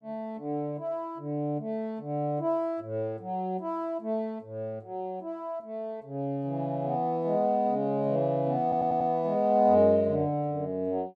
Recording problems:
stutter; at 8.5 s

